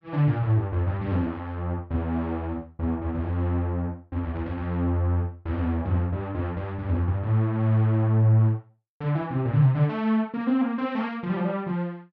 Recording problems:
none

